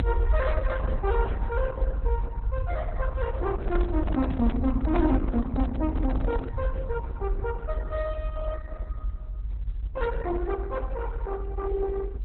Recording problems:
lossy compression; Opus, then Opus, log-spectral distance 2 dB, nothing above 3.9 kHz
rumble; below 64 Hz, SNR 0 dB
microphone handling noise; from 3.5 to 6.5 s; peak +1 dB vs average level

